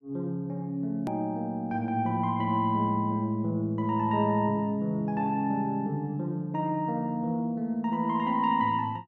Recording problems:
click at an edit; at 1 s

